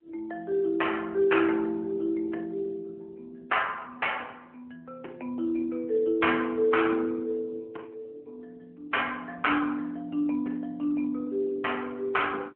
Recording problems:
phone line; 260 Hz to 3.2 kHz, AMR-NB

